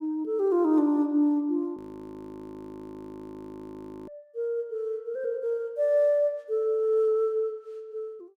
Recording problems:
audio freezing; at 2 s for 2.5 s

